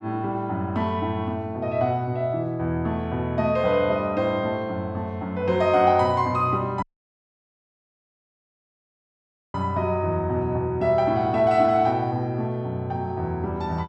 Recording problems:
dropout; at 7 s for 2.5 s

